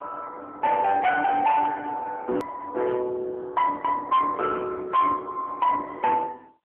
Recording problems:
phone line; 280 Hz to 3.6 kHz, AMR-NB
distorted audio; hard clipping, signal-to-distortion ratio 11 dB
edit click; at 2.5 s

